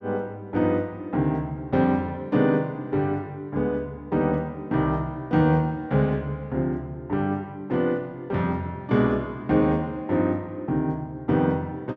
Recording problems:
none

